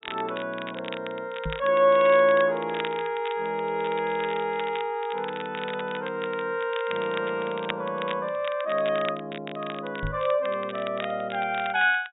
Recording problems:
treble missing; nothing above 4 kHz
crackling; vinyl, SNR 14 dB
knock on the microphone; at 1.5 s and at 10 s; peak -2 dB vs average level

